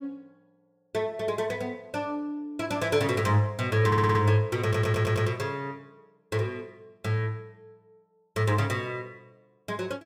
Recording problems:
stutter; at 4 s and at 4.5 s

